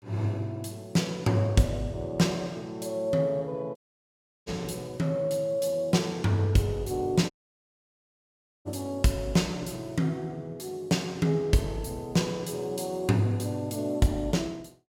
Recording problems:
audio cutting out; at 4 s for 0.5 s and at 7.5 s for 1.5 s

